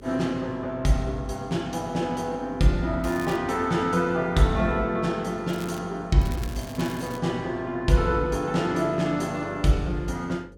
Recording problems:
hum; 50 Hz, harmonics up to 550 Hz, SNR 21 dB
crackling; at 3 s, at 5.5 s and at 6 s; loose cable, SNR 19 dB

